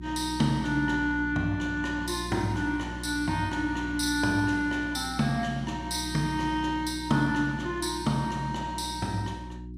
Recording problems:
mains hum; 60 Hz, harmonics up to 360 Hz, SNR 11 dB

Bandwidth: 15.5 kHz